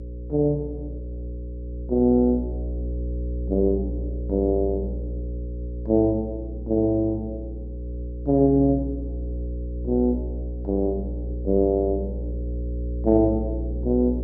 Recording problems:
hum; 60 Hz, harmonics up to 540 Hz, SNR 8 dB

